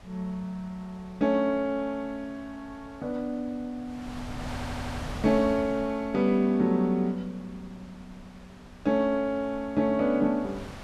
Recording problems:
wind on the microphone; below 1.1 kHz, SNR 16 dB
audio stuttering; at 4.5 s

